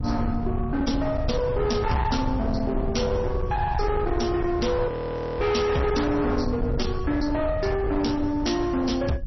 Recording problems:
lossy codec; MP3, log-spectral distance 3 dB, nothing above 5.8 kHz
distorted audio; hard clipping, uneven, signal-to-distortion ratio 8 dB
rumble; below 150 Hz, SNR 5 dB
audio freezing; at 5 s for 0.5 s

